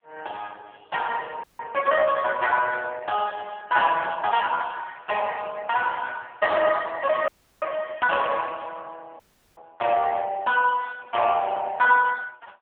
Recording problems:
telephone audio; 370 Hz to 2.8 kHz, AMR-NB
dropout; at 1.5 s, at 7.5 s and at 9 s

